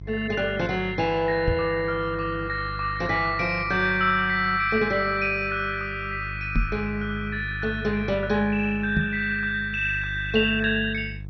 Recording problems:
lossy codec; MP2, log-spectral distance 4 dB, nothing above 5.2 kHz
hum; 50 Hz, harmonics up to 350 Hz, SNR 13 dB
microphone thump; at 1.5 s, at 6.5 s and at 9 s; peak +3 dB vs average level

